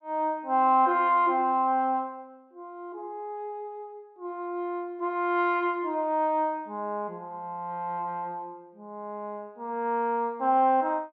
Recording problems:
none

